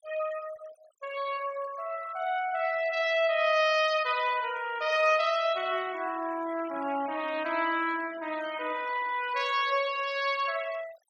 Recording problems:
noise reduction artefacts; signal-to-artefact ratio 18 dB

